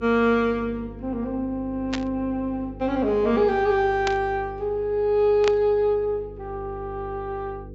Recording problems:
treble cut off; nothing above 8 kHz
hum; 50 Hz, harmonics up to 500 Hz, SNR 17 dB
burst of static; at 2 s, at 4 s and at 5.5 s; peak 0 dB vs average level

